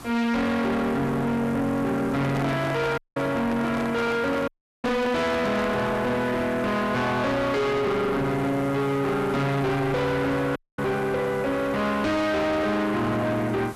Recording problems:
distorted audio; soft clipping, signal-to-distortion ratio 6 dB
hiss; SNR 20 dB
microphone handling noise; from 2 to 6 s; peak -1 dB vs average level
audio cutting out; at 3 s, at 4.5 s and at 11 s

